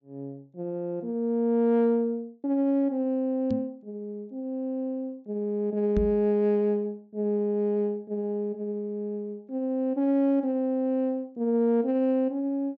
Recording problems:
treble missing; nothing above 8 kHz
microphone bump; at 3.5 s and at 6 s; peak +1 dB vs average level

